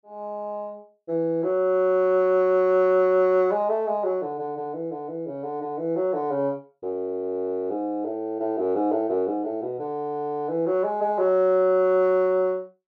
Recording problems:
none

